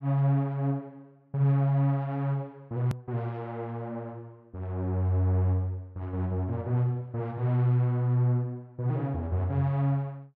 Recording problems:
edit click; at 3 s

